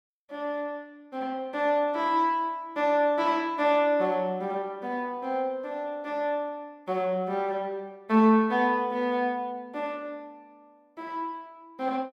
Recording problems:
none

